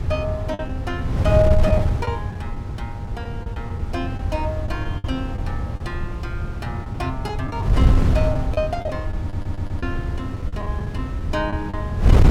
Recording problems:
wind on the microphone; below 120 Hz, SNR -4 dB
packet loss; 7% of the sound replaced, filled with the last packet
stutter; at 9 s

